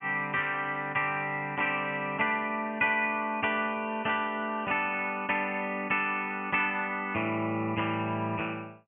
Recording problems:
treble cut off; nothing above 3.3 kHz

